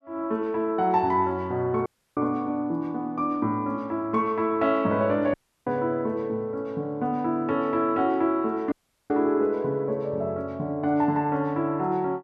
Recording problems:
audio cutting out; at 2 s, at 5.5 s and at 8.5 s

